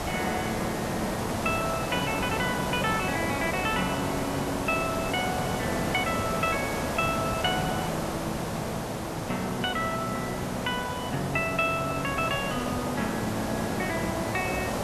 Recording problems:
background hiss; SNR 1 dB

